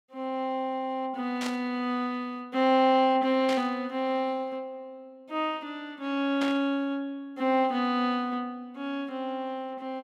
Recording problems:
static burst; at 1.5 s, at 3.5 s and at 6.5 s; peak -3 dB vs average level

